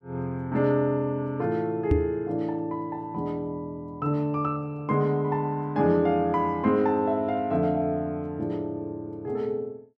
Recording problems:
microphone thump; at 2 s; peak +7 dB vs average level

